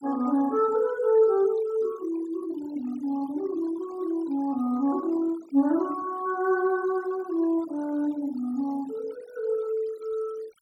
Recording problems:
noise reduction artefacts; signal-to-artefact ratio 22 dB

